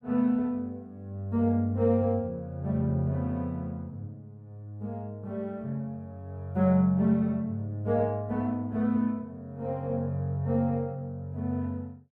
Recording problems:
none

